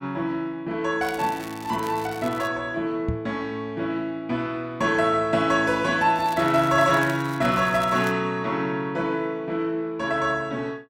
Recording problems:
crackling; from 1 to 2.5 s and from 6 to 8 s; loose cable, SNR 19 dB
microphone thump; at 3 s; peak 0 dB vs average level

